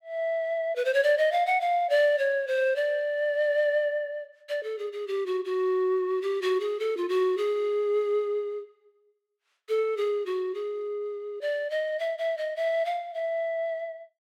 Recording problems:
none

